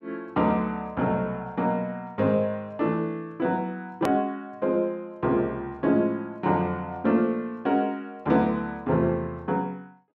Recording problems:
edit click; at 4 s

